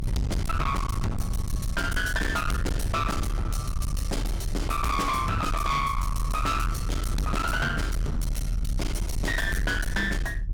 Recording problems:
distortion; hard clipping, signal-to-distortion ratio 7 dB
low-frequency rumble; below 120 Hz, strongest tone 40 Hz, SNR 2 dB

